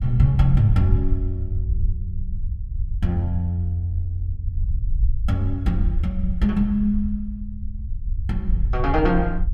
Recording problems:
rumble; below 64 Hz, SNR 4 dB

